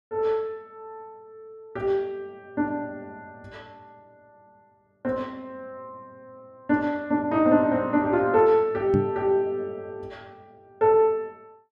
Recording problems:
microphone bump; at 9 s; peak +4 dB vs average level

